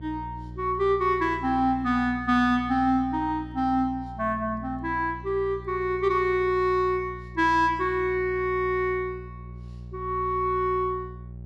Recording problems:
electrical hum; 60 Hz, harmonics up to 540 Hz, SNR 15 dB

